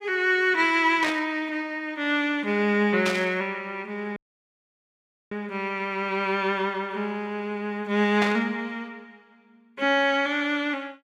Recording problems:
burst of static; at 1 s, at 3 s and at 8 s; peak 0 dB vs average level
audio cutting out; at 4 s for 1 s

